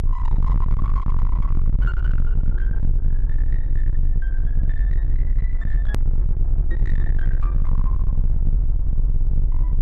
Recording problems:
distortion; hard clipping, signal-to-distortion ratio 6 dB
low-frequency rumble; below 44 Hz, strongest tone 24 Hz, SNR -17 dB
hard cut with a click; at 6 s

